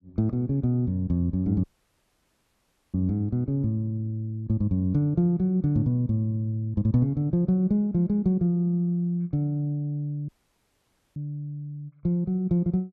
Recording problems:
dropout; at 1.5 s for 1.5 s and at 10 s for 1 s

